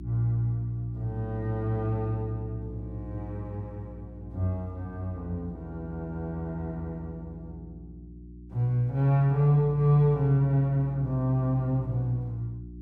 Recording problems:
electrical hum; 60 Hz, harmonics up to 360 Hz, SNR 14 dB

